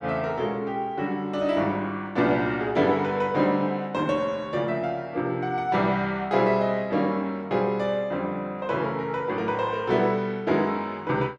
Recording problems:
none

